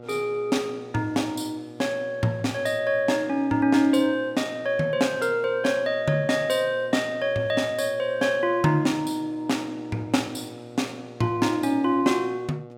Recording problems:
hum; 60 Hz, harmonics up to 1.4 kHz, SNR 19 dB

